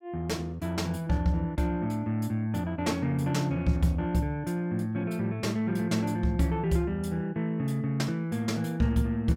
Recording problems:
none

